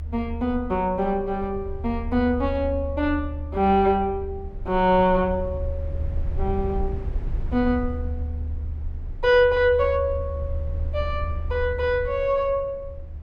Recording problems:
low-frequency rumble; below 76 Hz, SNR 8 dB

